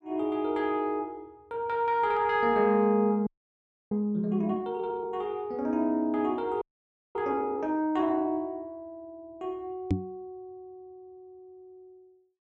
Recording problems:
frozen audio; at 3.5 s for 0.5 s and at 6.5 s for 0.5 s
knock on the microphone; at 10 s; peak +6 dB vs average level

